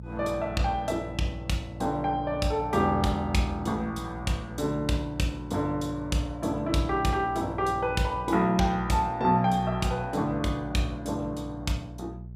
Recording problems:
electrical hum; 60 Hz, harmonics up to 420 Hz, SNR 13 dB

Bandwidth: 14.5 kHz